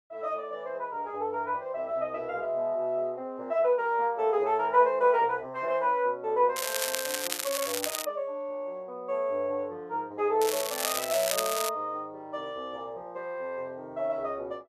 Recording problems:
crackling; from 6.5 to 8 s and from 10 to 12 s; loose cable, SNR 2 dB

